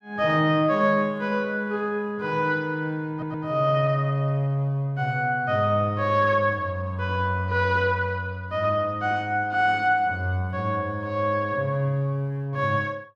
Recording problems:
audio stuttering; at 3 s

